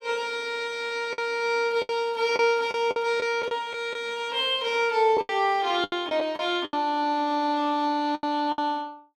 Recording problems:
packet loss; 9% of the sound replaced, filled with the last packet

